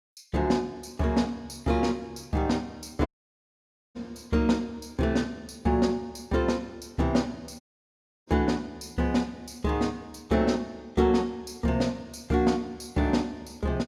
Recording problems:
audio cutting out; at 3 s for 1 s and at 7.5 s for 0.5 s

